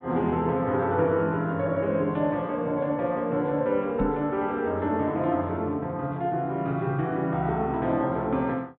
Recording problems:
treble missing; nothing above 4 kHz
microphone thump; at 4 s; peak +1 dB vs average level

